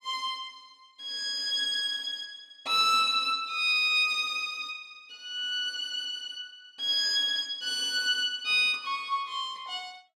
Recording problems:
none

